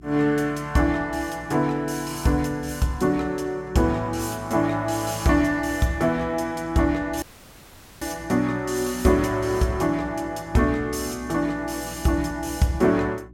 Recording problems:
hum; 60 Hz, harmonics up to 360 Hz, SNR 22 dB
audio cutting out; at 7 s for 1 s

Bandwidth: 16.5 kHz